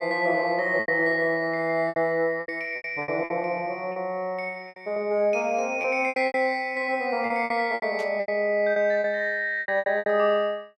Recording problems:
lost packets; 13% of the sound replaced, filled with repeated pitch periods
burst of static; at 8 s; peak -14 dB vs average level

